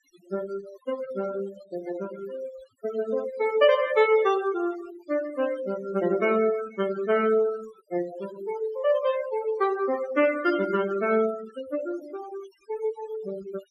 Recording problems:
noise reduction artefacts; signal-to-artefact ratio 15 dB

